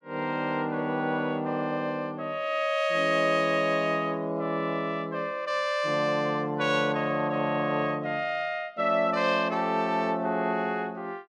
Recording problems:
none

